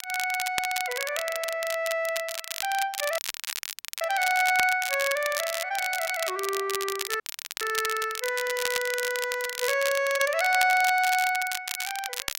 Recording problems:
crackle; vinyl, SNR 6 dB
dropout; at 3 s for 1 s and at 7 s

